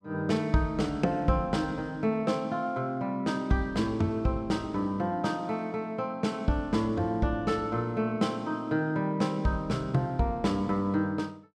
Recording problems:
none

